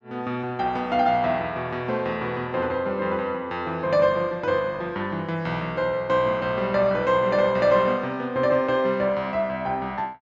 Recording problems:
none

